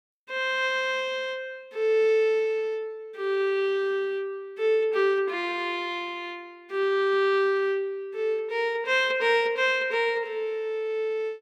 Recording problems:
none

